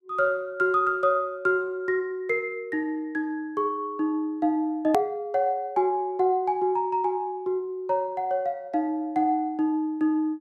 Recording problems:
hard cut with a click; at 5 s

